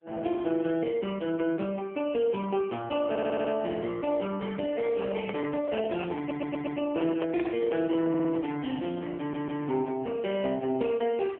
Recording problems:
telephone audio; 220 Hz to 3.3 kHz, AMR-NB
audio stuttering; 4 times, first at 3 s
handling noise; from 5 to 8.5 s; peak -8 dB vs average level

